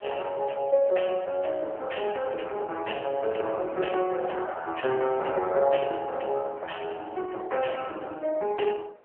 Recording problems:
telephone audio; 340 Hz to 3.1 kHz, AMR-NB
wind on the microphone; below 960 Hz, SNR 22 dB

